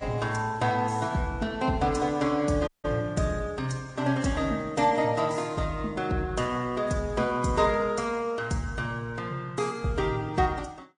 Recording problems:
lossy compression; Vorbis, then MP3, log-spectral distance 3 dB, nothing above 9.5 kHz
dropout; at 2.5 s

